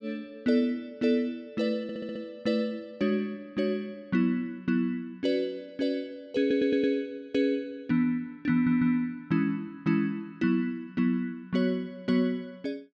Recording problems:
audio stuttering; at 2 s, at 6.5 s and at 8.5 s

